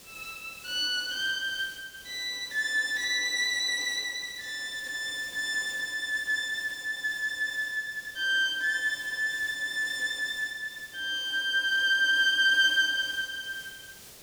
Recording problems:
hiss; SNR 21 dB

